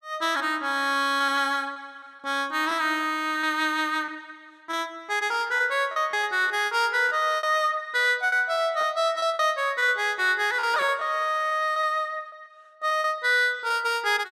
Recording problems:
lost packets; 9% of the sound replaced, filled with repeated pitch periods

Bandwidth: 14.5 kHz